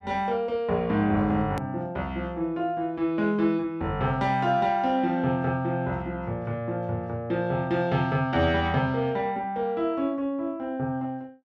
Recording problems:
edit click; at 1.5 s

